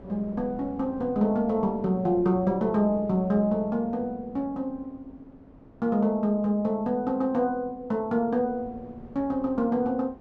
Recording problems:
wind noise; below 460 Hz, SNR 21 dB

